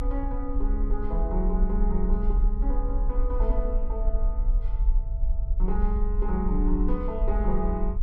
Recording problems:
rumble; below 44 Hz, strongest tone 32 Hz, SNR -4 dB

